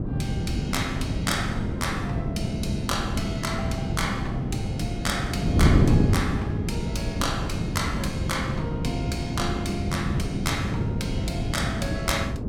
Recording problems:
wind noise; below 260 Hz, SNR -3 dB

